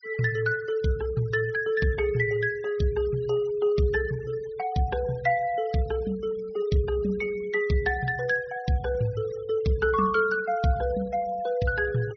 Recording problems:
treble cut off; nothing above 6 kHz
noise reduction artefacts; signal-to-artefact ratio 23 dB

